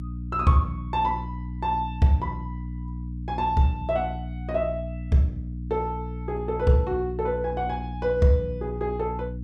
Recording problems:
hum; 60 Hz, harmonics up to 300 Hz, SNR 8 dB

